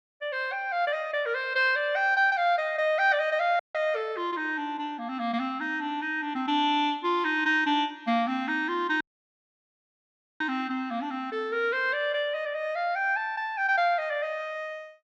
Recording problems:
audio cutting out; at 3.5 s and at 9 s for 1.5 s

